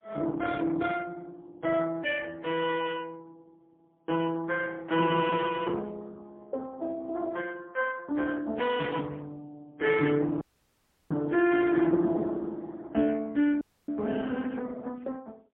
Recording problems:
phone line; 170 Hz to 3.4 kHz, AMR-NB, then MP3
dropout; at 10 s for 0.5 s and at 14 s

